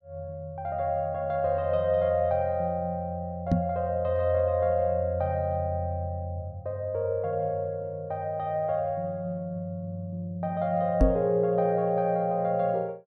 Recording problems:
microphone bump; at 3.5 s and at 11 s; peak +8 dB vs average level

